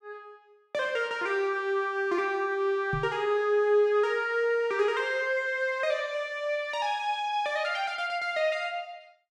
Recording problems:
knock on the microphone; at 3 s; peak -2 dB vs average level

